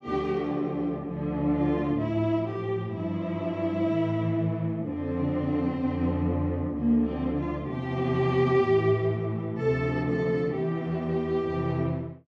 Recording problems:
none

